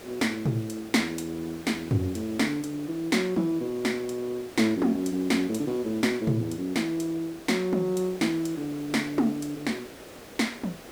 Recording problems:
hiss; SNR 16 dB

